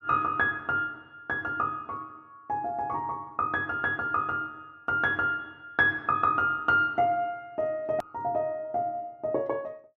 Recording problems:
click at an edit; at 8 s

